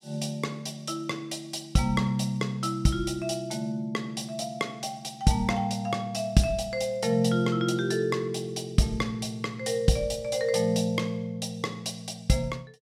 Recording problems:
none

